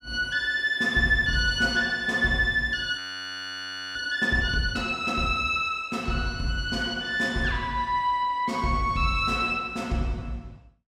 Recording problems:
audio freezing; at 3 s for 1 s

